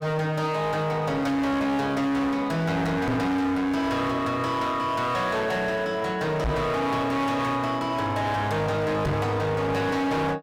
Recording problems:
distorted audio; hard clipping, signal-to-distortion ratio 7 dB
microphone bump; at 3 s, at 6.5 s and at 9 s; peak +4 dB vs average level

